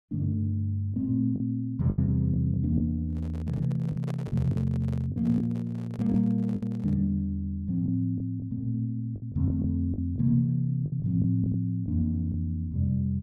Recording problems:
lost packets; 7% of the sound replaced, filled with the last packet
microphone handling noise; from 3 to 7 s; peak -9 dB vs average level

